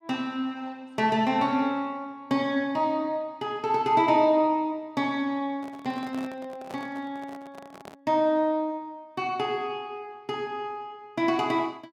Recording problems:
handling noise; from 5.5 to 8 s; peak -11 dB vs average level

